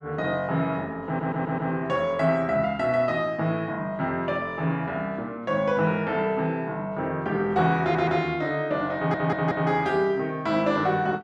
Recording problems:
stutter; at 1 s, at 8 s and at 9 s

